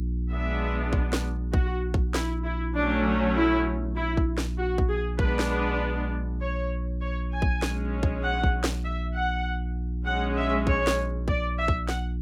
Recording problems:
hum; 60 Hz, harmonics up to 360 Hz, SNR 3 dB

